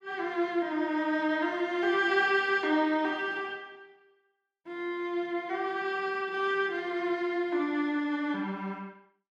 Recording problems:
none

